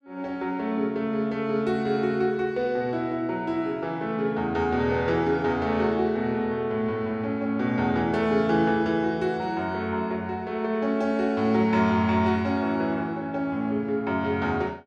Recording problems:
none

